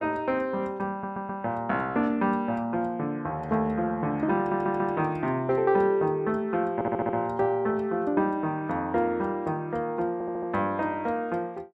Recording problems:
audio stuttering; 4 times, first at 1 s

